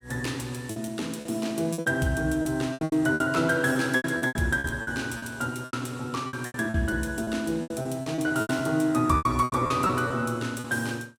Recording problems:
packet loss; 16% of the sound replaced, filled with repeated pitch periods

